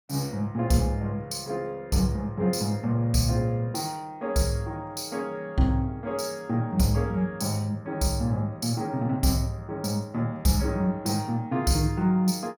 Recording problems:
none

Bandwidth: 17.5 kHz